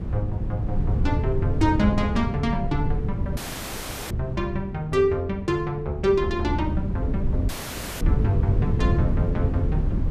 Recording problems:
wind on the microphone; below 140 Hz, SNR 1 dB
dropout; at 3.5 s for 0.5 s and at 7.5 s for 0.5 s

